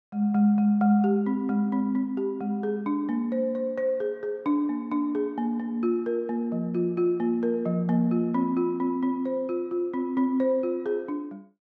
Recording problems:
none

